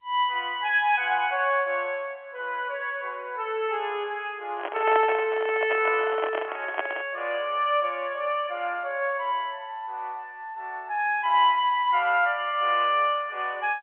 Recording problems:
telephone audio; 300 Hz to 3.3 kHz, G.711
microphone handling noise; from 4.5 to 7 s; peak +1 dB vs average level

